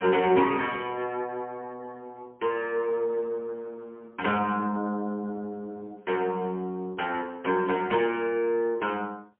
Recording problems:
phone line; 190 Hz to 2.9 kHz, AMR-NB, then MP3

